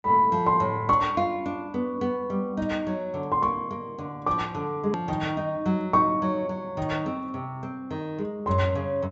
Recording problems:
treble cut off; nothing above 7.6 kHz
edit click; at 5 s

